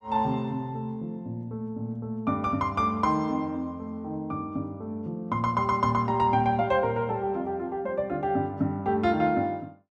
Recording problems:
none

